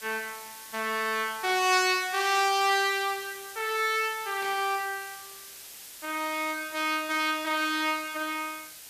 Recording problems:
background hiss; SNR 15 dB
burst of static; at 1.5 s and at 4.5 s; peak -12 dB vs average level

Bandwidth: 14.5 kHz